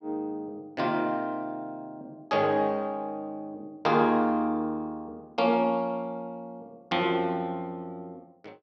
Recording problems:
none

